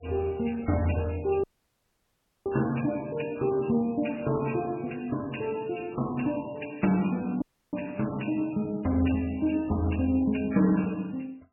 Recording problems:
lossy codec; MP3, log-spectral distance 6 dB, nothing above 2.8 kHz
audio cutting out; at 1.5 s for 1 s and at 7.5 s

